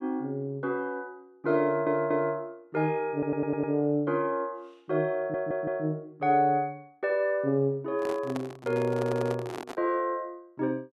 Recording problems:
audio stuttering; 4 times, first at 1.5 s
microphone handling noise; from 8 to 10 s; peak -4 dB vs average level

